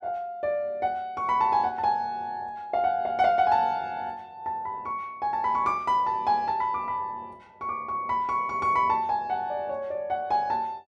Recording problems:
none

